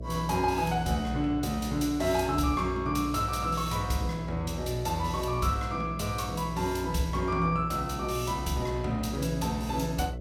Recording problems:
hum; 60 Hz, harmonics up to 660 Hz, SNR 9 dB

